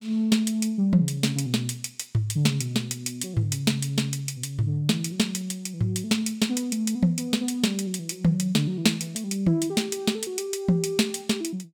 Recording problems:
none

